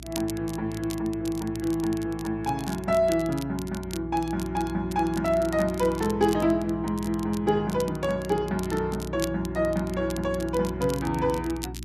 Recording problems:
hum; 60 Hz, harmonics up to 360 Hz, SNR 14 dB
crackling; vinyl, SNR 16 dB

